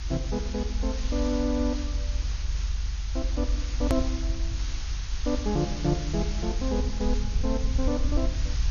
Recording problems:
lossy compression; MP2, log-spectral distance 7 dB, nothing above 13.1 kHz
hiss; slope +1 dB per octave, SNR 10 dB
low-frequency rumble; below 66 Hz, strongest tone 46 Hz, SNR 0 dB
click at an edit; at 4 s

